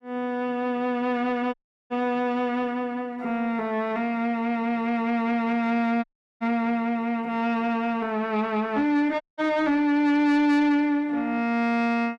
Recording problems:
distorted audio; soft clipping, signal-to-distortion ratio 11 dB
dropout; at 1.5 s, at 6 s and at 9 s

